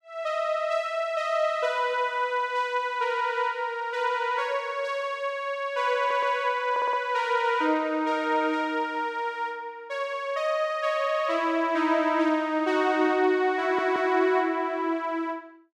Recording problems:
stutter; at 6 s, at 6.5 s and at 14 s

